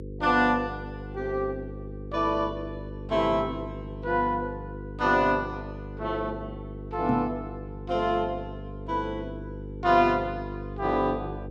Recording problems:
hum; 50 Hz, harmonics up to 500 Hz, SNR 11 dB
knock on the microphone; at 7 s; peak +2 dB vs average level

